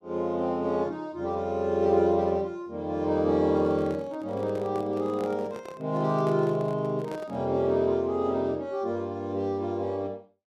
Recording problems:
handling noise; from 3.5 to 7.5 s; peak -8 dB vs average level

